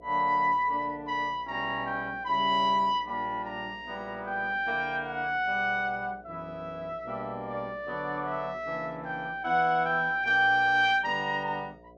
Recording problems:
mains hum; 60 Hz, harmonics up to 720 Hz, SNR 25 dB

